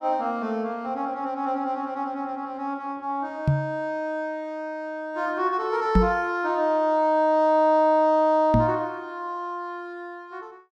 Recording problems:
microphone thump; at 3.5 s, at 6 s and at 8.5 s; peak +8 dB vs average level

